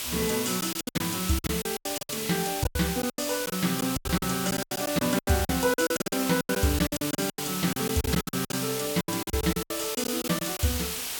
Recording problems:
hiss; slope +1 dB per octave, SNR 3 dB
packet loss; 20% of the sound replaced, filled with silence

